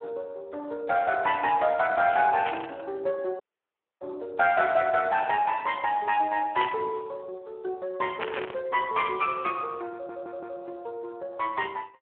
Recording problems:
telephone audio; 300 Hz to 3.5 kHz, Speex
burst of static; at 2.5 s, at 6.5 s and at 8 s; peak +2 dB vs average level
audio cutting out; at 3.5 s for 0.5 s
stutter; at 10 s

